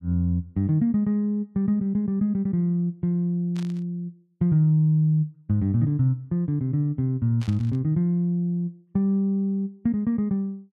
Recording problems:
burst of static; at 3.5 s and at 7.5 s; peak -15 dB vs average level

